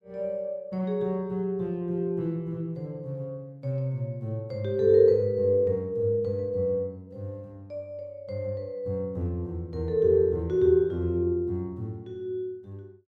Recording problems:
none

